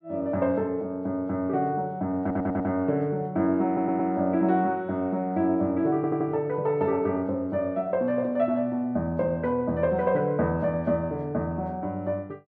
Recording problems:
audio stuttering; at 2 s, at 3.5 s and at 6 s

